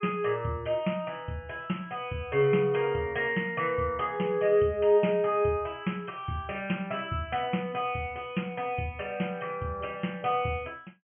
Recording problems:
treble cut off; nothing above 3.1 kHz

